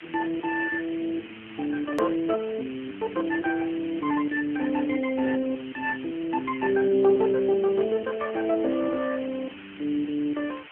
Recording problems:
phone line; 240 Hz to 2.3 kHz, AMR-NB
background hiss; SNR 17 dB
hard cut with a click; at 2 s

